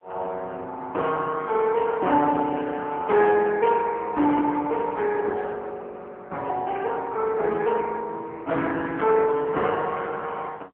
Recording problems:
phone line; 260 Hz to 3.4 kHz, AMR-NB

